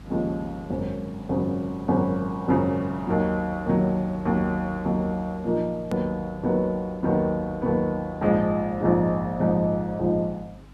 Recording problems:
mains hum; 50 Hz, harmonics up to 300 Hz, SNR 21 dB
background hiss; SNR 29 dB
click at an edit; at 6 s

